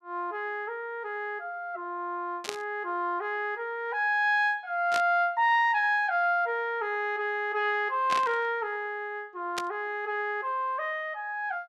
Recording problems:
static burst; 4 times, first at 2.5 s; peak 0 dB vs average level

